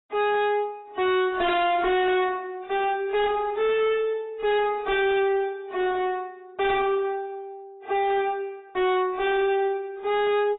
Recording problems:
lossy codec; AAC, log-spectral distance 2 dB, nothing above 3.8 kHz
distortion; hard clipping, uneven, signal-to-distortion ratio 4 dB

